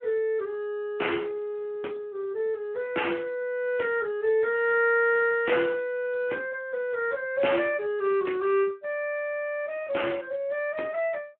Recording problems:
telephone audio; 240 Hz to 3.1 kHz, Speex

